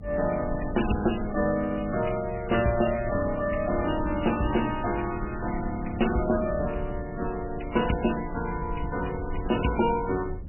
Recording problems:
codec artefacts; MP3, log-spectral distance 6 dB, nothing above 2.9 kHz
rumble; below 100 Hz, SNR 11 dB

